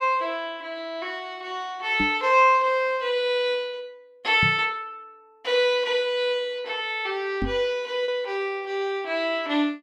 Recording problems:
packet loss; 0.4% of the sound replaced, filled with repeated pitch periods
microphone thump; at 2 s, at 4.5 s and at 7.5 s; peak 0 dB vs average level

